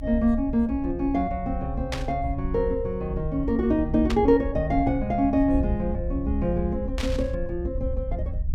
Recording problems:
low-frequency rumble; below 70 Hz, SNR 7 dB
burst of static; at 2 s, at 4 s and at 7 s; peak -2 dB vs average level

